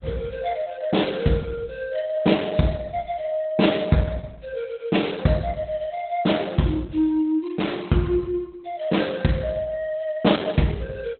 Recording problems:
codec artefacts; Opus, log-spectral distance 4 dB, nothing above 4 kHz

